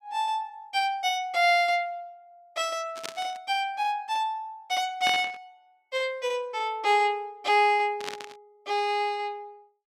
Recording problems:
static burst; at 3 s, at 5 s and at 8 s; peak -3 dB vs average level

